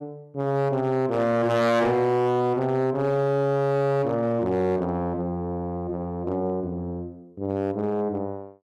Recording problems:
distortion; hard clipping, uneven, signal-to-distortion ratio 12 dB

